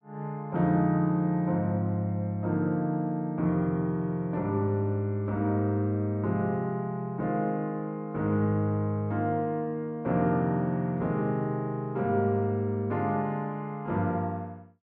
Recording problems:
none

